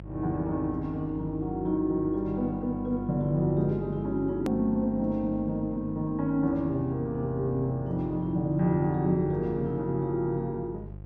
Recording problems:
mains hum; 50 Hz, harmonics up to 700 Hz, SNR 14 dB
click at an edit; at 4.5 s

